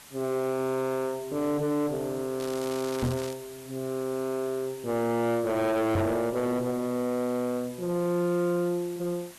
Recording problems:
distortion; soft clipping, signal-to-distortion ratio 5 dB
background hiss; slope -1 dB per octave, SNR 18 dB
crackling; at 2.5 s; loose cable, SNR 14 dB
microphone bump; at 3 s and at 6 s; peak +6 dB vs average level

